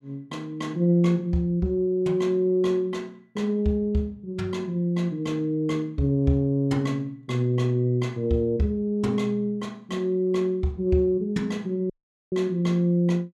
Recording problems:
dropout; at 12 s

